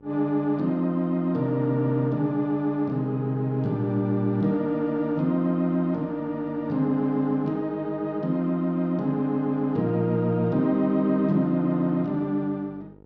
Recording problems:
hum; 50 Hz, harmonics up to 1 kHz, SNR 27 dB

